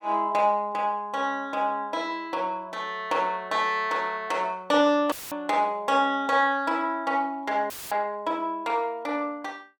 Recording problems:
dropout; at 5 s and at 7.5 s; filled with static

